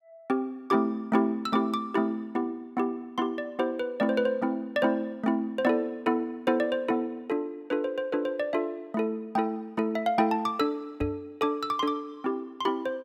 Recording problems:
microphone bump; at 11 s; peak -3 dB vs average level

